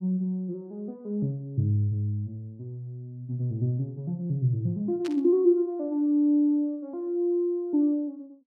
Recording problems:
burst of static; at 5 s; peak -10 dB vs average level

